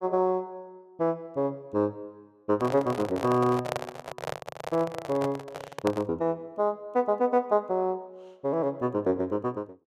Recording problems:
microphone handling noise; from 2.5 to 6 s; peak +1 dB vs average level

